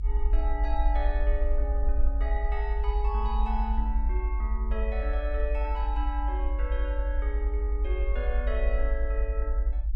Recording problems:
low-frequency rumble; below 56 Hz, strongest tone 48 Hz, SNR -7 dB

